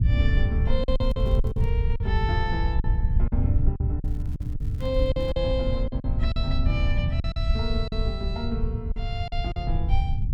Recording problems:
low-frequency rumble; below 90 Hz, SNR -5 dB
lost packets; 9% of the sound replaced, filled with silence
crackle; at 1 s and from 4 to 5.5 s; loose cable, SNR 26 dB

